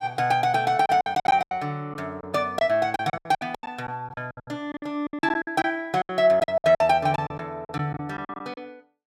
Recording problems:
lost packets; 17% of the sound replaced, filled with silence

